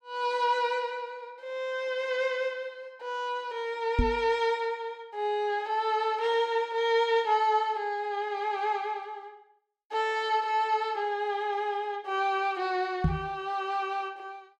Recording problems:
microphone thump; at 4 s and at 13 s; peak +7 dB vs average level

